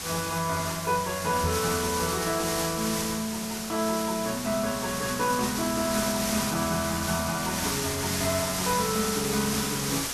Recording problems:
hiss; slope 0 dB per octave, SNR 2 dB
microphone thump; at 1.5 s; peak +2 dB vs average level

